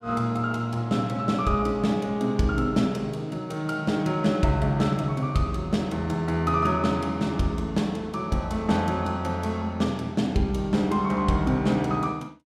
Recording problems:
none

